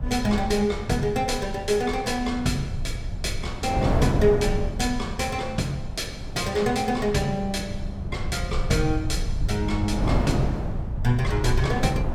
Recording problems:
rumble; below 94 Hz, SNR 7 dB
wind noise; below 400 Hz, SNR 6 dB

